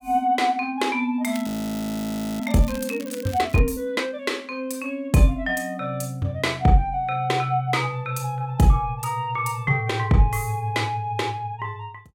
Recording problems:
crackling; from 1.5 to 3.5 s; loose cable, SNR 16 dB
frozen audio; at 1.5 s for 1 s

